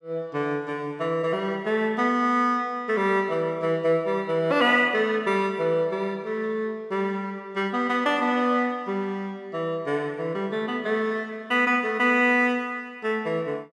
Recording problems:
none

